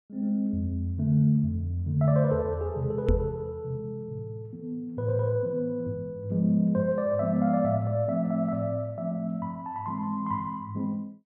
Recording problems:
microphone thump; at 3 s; peak +5 dB vs average level

